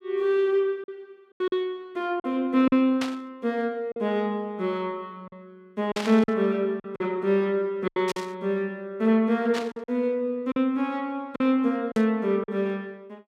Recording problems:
lost packets; 6% of the sound replaced, filled with silence
burst of static; 5 times, first at 3 s; peak -2 dB vs average level

